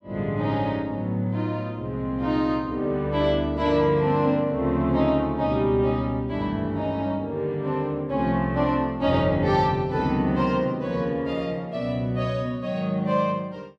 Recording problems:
none

